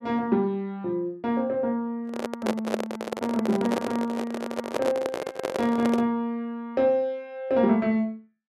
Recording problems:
microphone handling noise; from 2 to 6 s; peak +4 dB vs average level

